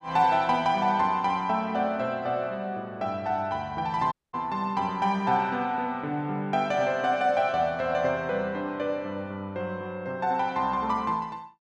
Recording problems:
dropout; at 4 s

